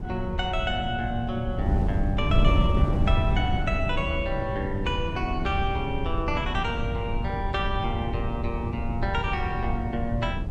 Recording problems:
wind noise; below 130 Hz, SNR 0 dB

